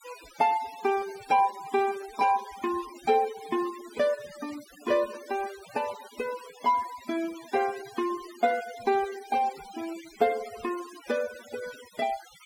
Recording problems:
denoising artefacts; signal-to-artefact ratio 16 dB

